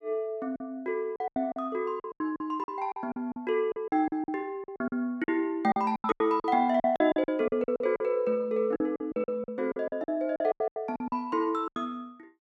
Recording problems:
packet loss; 17% of the sound replaced, filled with silence

